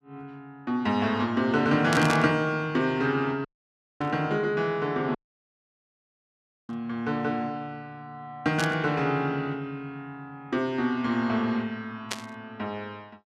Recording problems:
burst of static; 5 times, first at 2 s; peak +1 dB vs average level
dropout; at 3.5 s for 0.5 s and at 5 s for 1.5 s

